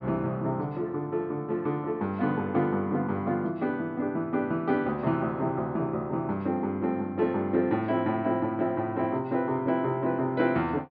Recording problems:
treble missing; nothing above 5.5 kHz

